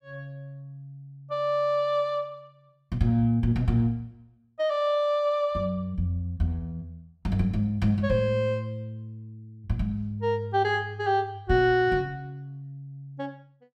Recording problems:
none

